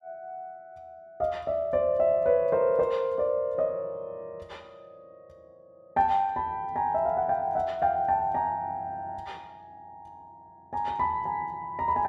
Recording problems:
none

